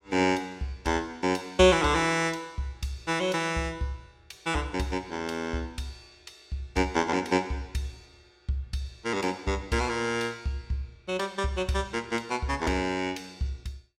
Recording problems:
none

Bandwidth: 16.5 kHz